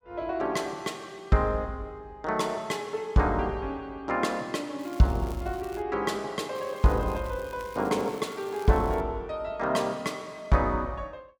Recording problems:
crackle; from 5 to 6 s and from 6.5 to 9 s; loose cable, SNR 22 dB

